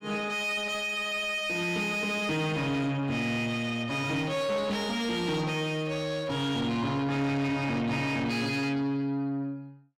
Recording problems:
distortion; soft clipping, signal-to-distortion ratio 10 dB

